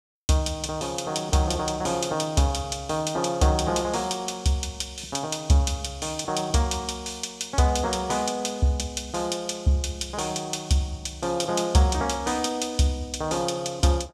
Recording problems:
none

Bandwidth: 15 kHz